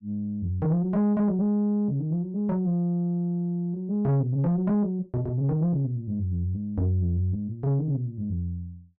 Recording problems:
distortion; soft clipping, signal-to-distortion ratio 11 dB

